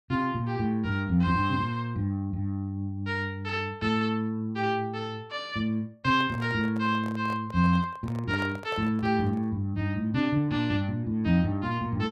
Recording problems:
handling noise; from 6 to 9.5 s; peak -8 dB vs average level

